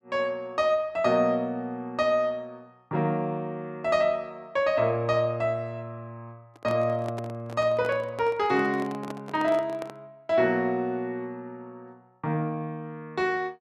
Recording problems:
handling noise; from 6.5 to 10 s; peak -7 dB vs average level

